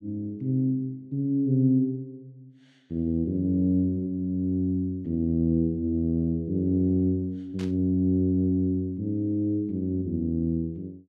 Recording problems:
burst of static; at 7.5 s; peak -13 dB vs average level

